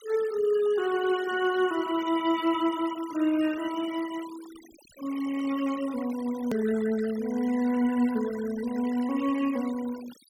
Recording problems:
denoising artefacts; signal-to-artefact ratio 18 dB
click at an edit; at 6.5 s

